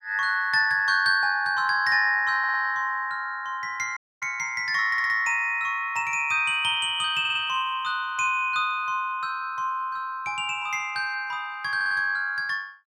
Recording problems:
stutter; 4 times, first at 2.5 s
dropout; at 4 s

